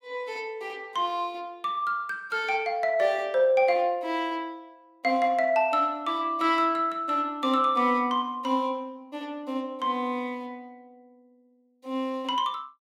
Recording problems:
none

